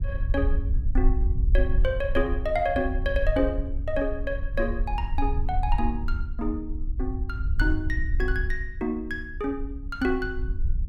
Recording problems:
rumble; below 60 Hz, SNR 0 dB

